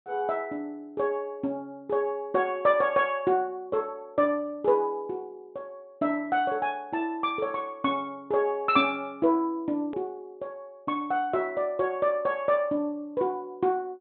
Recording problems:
treble cut off; nothing above 4 kHz
click at an edit; at 10 s

